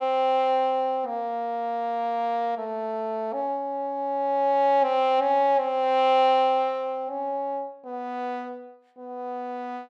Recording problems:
none

